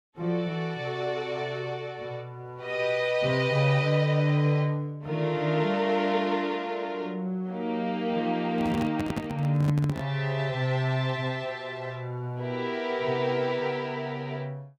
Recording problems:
handling noise; from 8.5 to 10 s; peak 0 dB vs average level

